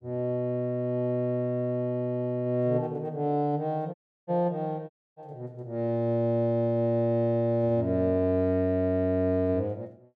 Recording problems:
dropout; at 4 s and at 5 s

